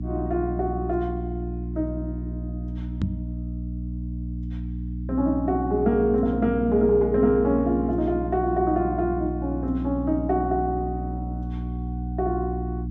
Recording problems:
treble missing; nothing above 8 kHz
electrical hum; 60 Hz, harmonics up to 300 Hz, SNR 7 dB
microphone thump; at 3 s; peak +2 dB vs average level

